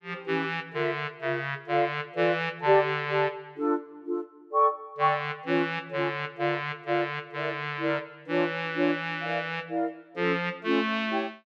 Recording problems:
none

